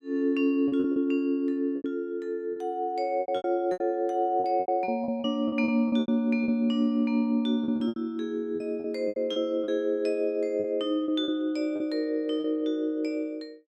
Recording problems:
lost packets; 12% of the sound replaced, filled with repeated pitch periods

